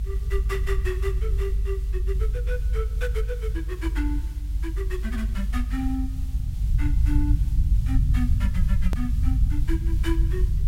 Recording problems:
hiss; SNR 18 dB
low-frequency rumble; below 68 Hz, strongest tone 48 Hz, SNR -8 dB
click at an edit; at 9 s

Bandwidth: 16 kHz